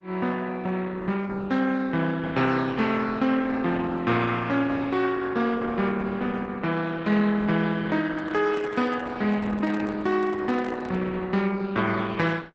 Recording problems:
codec artefacts; Opus, log-spectral distance 4 dB, nothing above 7.6 kHz
handling noise; from 8 to 11 s; peak -10 dB vs average level

